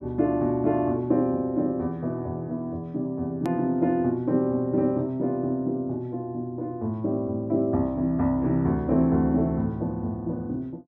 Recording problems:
click at an edit; at 3.5 s

